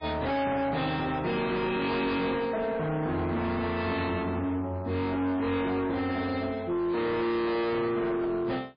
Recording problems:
codec artefacts; MP3, log-spectral distance 3 dB, nothing above 4.2 kHz
distortion; hard clipping, signal-to-distortion ratio 7 dB

